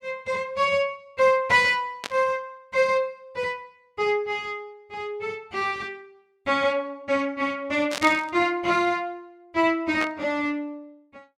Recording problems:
static burst; at 2 s, at 8 s and at 10 s; peak -2 dB vs average level

